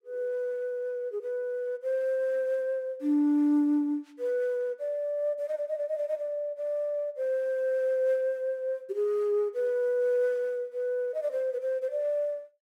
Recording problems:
none

